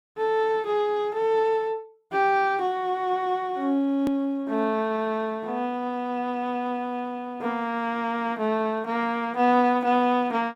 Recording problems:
edit click; at 4 s

